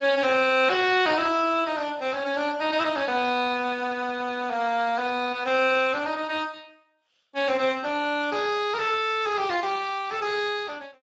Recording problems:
lossy compression; Speex, log-spectral distance 5 dB, nothing above 7.3 kHz

